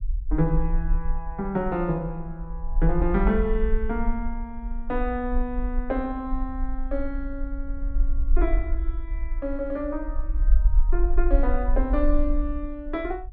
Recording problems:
rumble; below 46 Hz, SNR 0 dB

